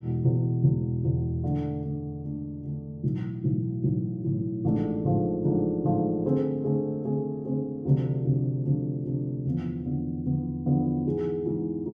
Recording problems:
none

